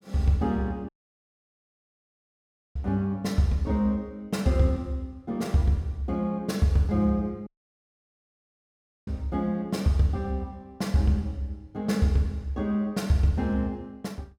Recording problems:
audio cutting out; at 1 s for 2 s and at 7.5 s for 1.5 s

